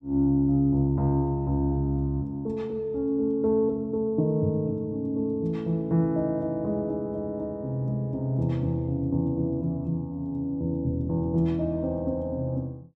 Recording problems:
none

